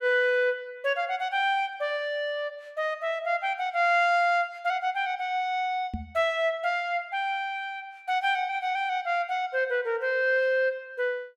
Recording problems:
knock on the microphone; at 6 s; peak -3 dB vs average level

